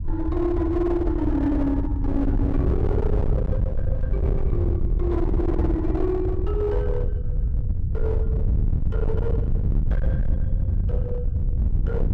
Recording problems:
distorted audio; hard clipping, signal-to-distortion ratio 7 dB
low-frequency rumble; below 96 Hz, SNR -2 dB

